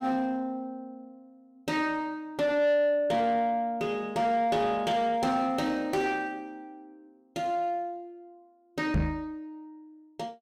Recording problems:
distorted audio; soft clipping, signal-to-distortion ratio 12 dB
knock on the microphone; at 9 s; peak +6 dB vs average level

